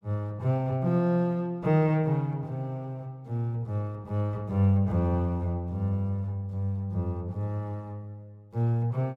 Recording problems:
none

